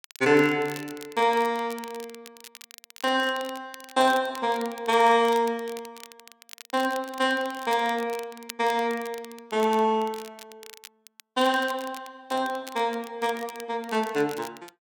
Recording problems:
crackle; vinyl, SNR 19 dB

